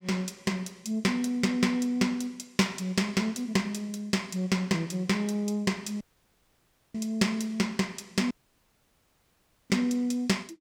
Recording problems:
dropout; at 6 s for 1 s and at 8.5 s for 1.5 s

